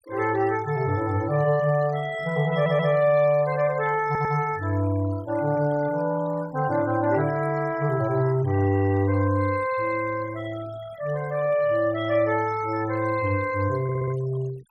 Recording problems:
denoising artefacts; signal-to-artefact ratio 21 dB
stutter; at 2.5 s, at 4 s and at 14 s

